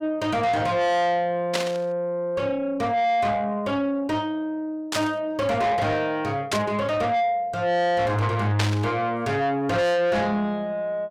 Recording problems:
distorted audio; soft clipping, signal-to-distortion ratio 7 dB
burst of static; 4 times, first at 1.5 s; peak +3 dB vs average level

